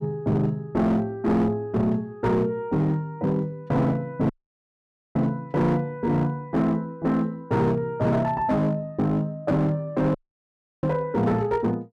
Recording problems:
distortion; hard clipping, signal-to-distortion ratio 10 dB
dropout; at 4.5 s for 1 s and at 10 s for 0.5 s

